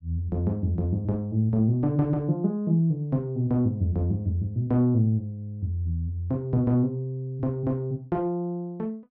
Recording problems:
none

